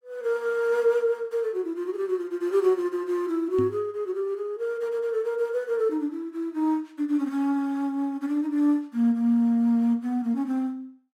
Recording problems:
microphone bump; at 3.5 s; peak 0 dB vs average level

